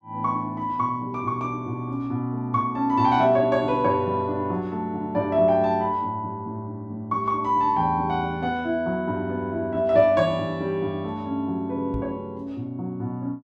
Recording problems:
microphone thump; at 12 s; peak -3 dB vs average level

